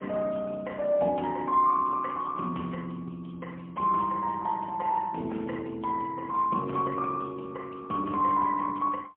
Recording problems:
phone line; 300 Hz to 3.9 kHz, AMR-NB, then MP3

